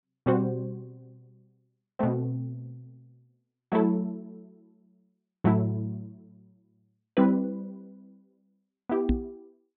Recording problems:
treble cut off; nothing above 4 kHz
microphone thump; at 9 s; peak +8 dB vs average level

